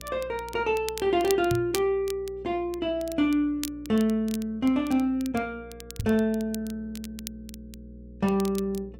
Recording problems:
mains hum; 60 Hz, harmonics up to 540 Hz, SNR 21 dB
crackling; vinyl, SNR 15 dB
microphone thump; at 1.5 s and at 6 s; peak 0 dB vs average level

